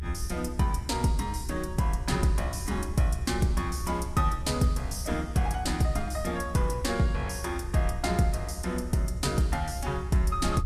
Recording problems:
codec artefacts; Vorbis, log-spectral distance 3 dB, nothing above 13.8 kHz
electrical hum; 60 Hz, harmonics up to 420 Hz, SNR 25 dB
rumble; below 76 Hz, SNR 8 dB

